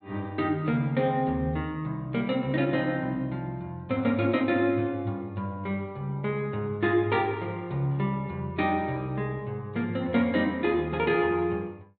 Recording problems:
treble missing; nothing above 4.3 kHz

